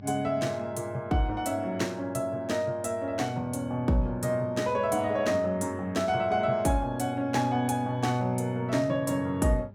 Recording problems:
hum; 50 Hz, harmonics up to 800 Hz, SNR 19 dB

